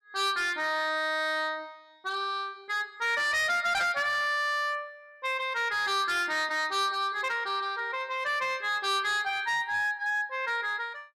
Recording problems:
distortion; hard clipping, signal-to-distortion ratio 11 dB

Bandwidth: 13.5 kHz